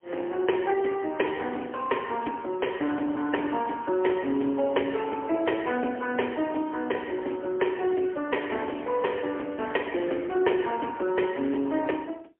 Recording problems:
telephone audio; 240 Hz to 3.1 kHz, AMR-NB, then MP3

